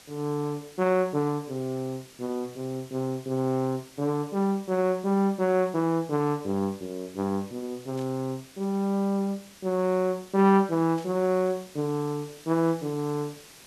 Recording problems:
background hiss; slope -1 dB per octave, SNR 22 dB
burst of static; at 8 s and at 11 s; peak -15 dB vs average level

